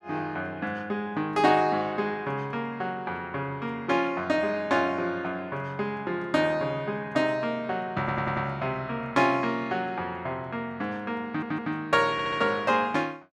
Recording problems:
stutter; at 8 s, at 11 s and at 12 s

